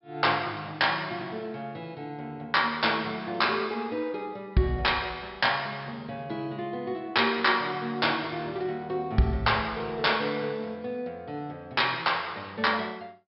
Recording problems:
treble cut off; nothing above 5.3 kHz

